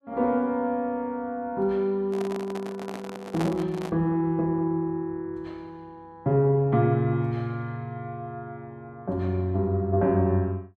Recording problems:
handling noise; from 2 to 4 s; peak -1 dB vs average level

